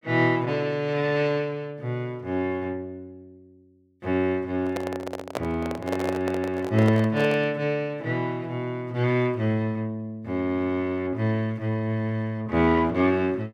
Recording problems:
handling noise; from 4.5 to 7.5 s; peak 0 dB vs average level

